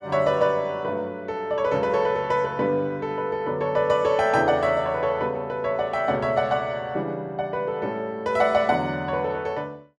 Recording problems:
none

